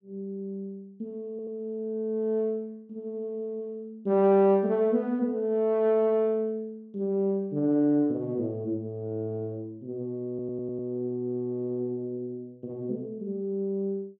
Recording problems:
audio stuttering; at 1.5 s and at 10 s

